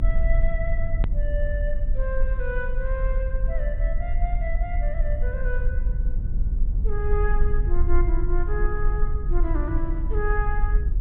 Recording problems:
low-pass filter; nothing above 4 kHz
low-frequency rumble; below 48 Hz, strongest tone 20 Hz, SNR -6 dB
edit click; at 1 s

